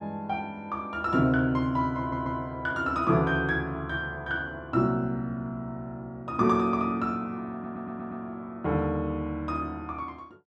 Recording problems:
audio stuttering; at 2 s and at 7.5 s

